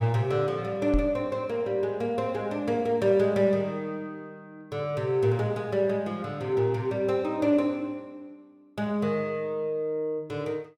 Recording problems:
knock on the microphone; at 1 s; peak +2 dB vs average level

